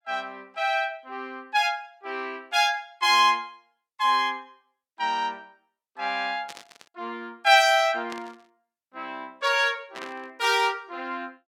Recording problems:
burst of static; at 6.5 s, at 8 s and at 10 s; peak -11 dB vs average level

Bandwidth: 17 kHz